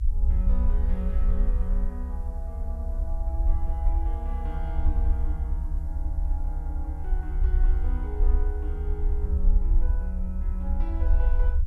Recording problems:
background hiss; slope +3 dB per octave, SNR 28 dB
rumble; below 62 Hz, strongest tone 32 Hz, SNR -12 dB

